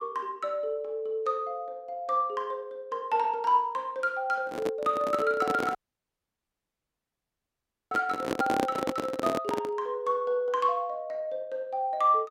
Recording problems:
microphone handling noise; from 4.5 to 10 s; peak +4 dB vs average level
audio cutting out; at 6 s for 2 s

